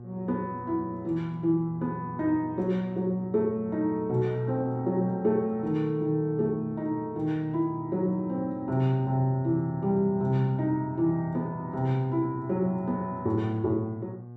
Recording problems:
mains hum; 60 Hz, harmonics up to 840 Hz, SNR 16 dB

